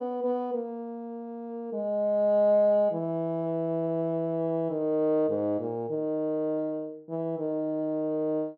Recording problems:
low-pass filter; nothing above 8 kHz

